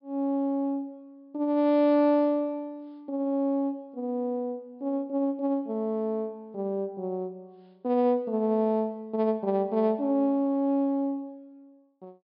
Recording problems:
treble cut off; nothing above 5.5 kHz

